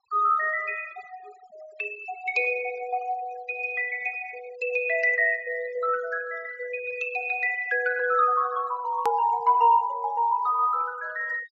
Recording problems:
treble cut off; nothing above 8 kHz
noise reduction artefacts; signal-to-artefact ratio 21 dB
click at an edit; at 9 s

